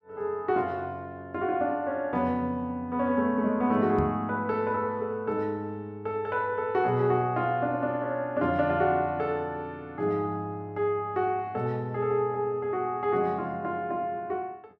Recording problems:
microphone bump; at 4 s; peak +3 dB vs average level

